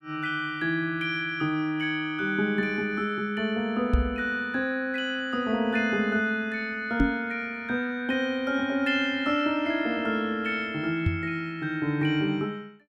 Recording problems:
knock on the microphone; at 4 s, at 7 s and at 11 s; peak +7 dB vs average level

